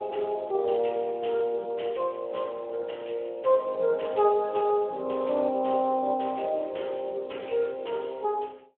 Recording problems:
phone line; 300 Hz to 3.3 kHz, Speex

